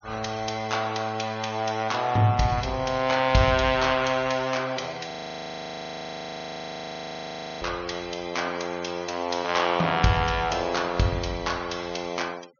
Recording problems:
treble cut off; nothing above 6.6 kHz
denoising artefacts; signal-to-artefact ratio 21 dB
audio freezing; at 5 s for 2.5 s

